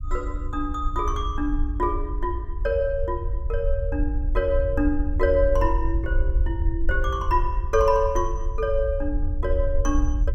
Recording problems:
rumble; below 62 Hz, SNR 2 dB

